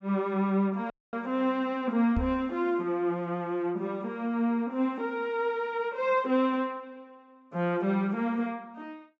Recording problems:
low-pass filter; nothing above 8 kHz
audio cutting out; at 1 s
microphone bump; at 2 s; peak +2 dB vs average level

